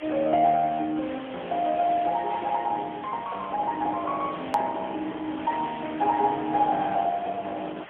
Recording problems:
telephone audio; 280 Hz to 2.8 kHz, AMR-NB, then MP3
background hiss; SNR 16 dB
hard cut with a click; at 4.5 s

